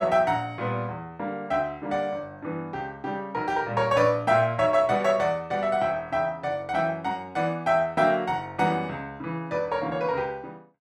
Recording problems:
none

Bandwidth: 13.5 kHz